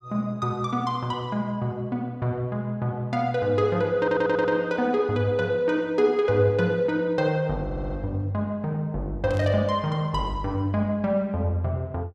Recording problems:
stutter; at 4 s and at 7.5 s
burst of static; at 9.5 s; peak -16 dB vs average level

